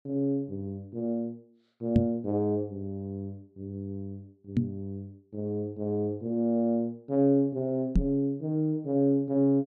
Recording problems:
microphone bump; at 2 s, at 4.5 s and at 8 s; peak +8 dB vs average level

